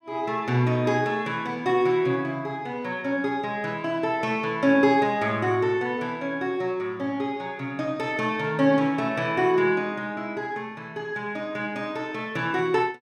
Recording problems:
none

